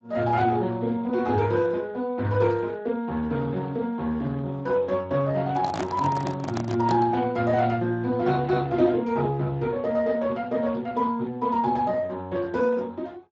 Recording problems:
codec artefacts; Speex, log-spectral distance 3 dB
handling noise; from 5.5 to 7 s; peak -1 dB vs average level

